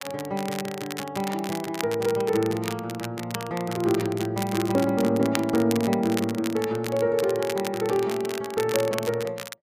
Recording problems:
crackle; vinyl, SNR 11 dB

